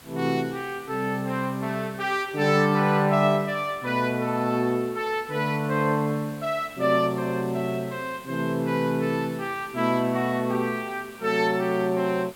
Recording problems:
hiss; slope -2 dB per octave, SNR 22 dB

